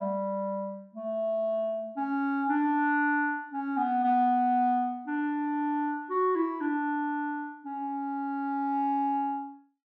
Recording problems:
none

